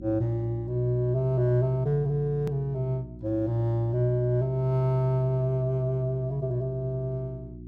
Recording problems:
mains hum; 60 Hz, harmonics up to 360 Hz, SNR 15 dB
edit click; at 2.5 s

